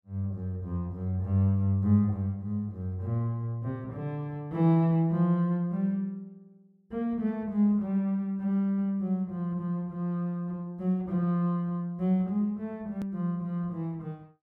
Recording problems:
hard cut with a click; at 13 s

